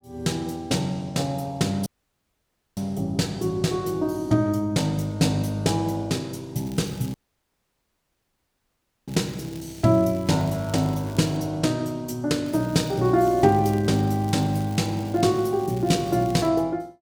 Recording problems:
audio cutting out; at 2 s for 1 s and at 7 s for 2 s
crackling; from 6.5 to 11 s and from 12 to 16 s; loose cable, SNR 23 dB

